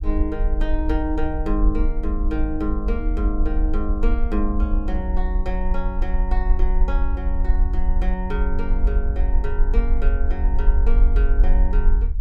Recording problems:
rumble; below 48 Hz, SNR -6 dB

